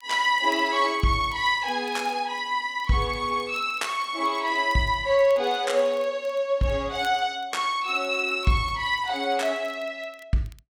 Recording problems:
crackling; vinyl, SNR 29 dB

